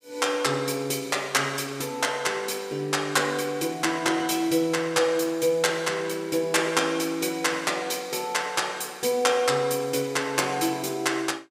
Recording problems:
none

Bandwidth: 15.5 kHz